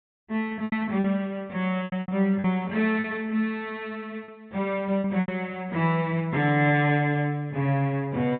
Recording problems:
treble cut off; nothing above 4 kHz
lost packets; 6% of the sound replaced, filled with repeated pitch periods

